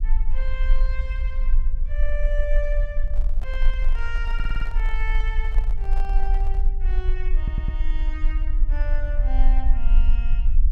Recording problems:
low-frequency rumble; below 38 Hz, strongest tone 22 Hz, SNR -11 dB
microphone handling noise; from 3 to 7 s; peak -4 dB vs average level
audio stuttering; at 4.5 s and at 7.5 s

